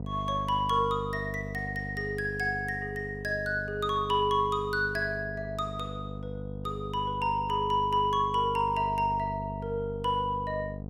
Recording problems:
mains hum; 50 Hz, harmonics up to 750 Hz, SNR 9 dB

